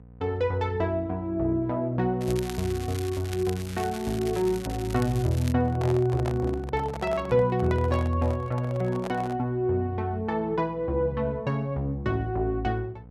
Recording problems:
hum; 60 Hz, harmonics up to 780 Hz, SNR 21 dB
crackling; from 2 to 5.5 s; loose cable, SNR 15 dB
microphone handling noise; from 5.5 to 9.5 s; peak -4 dB vs average level

